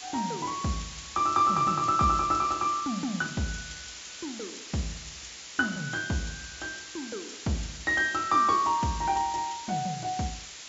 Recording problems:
treble missing; nothing above 7.5 kHz
hiss; slope +2 dB per octave, SNR 12 dB

